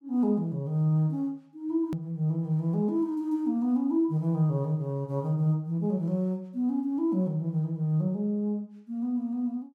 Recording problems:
click at an edit; at 2 s

